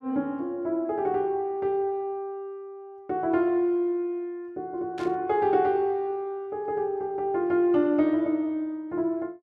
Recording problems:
burst of static; at 5 s; peak -14 dB vs average level

